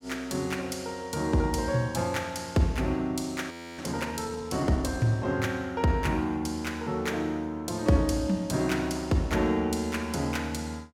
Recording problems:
frozen audio; at 3.5 s

